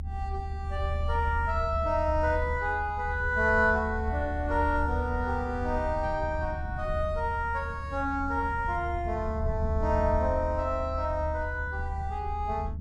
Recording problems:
low-frequency rumble; below 78 Hz, strongest tone 76 Hz, SNR 5 dB

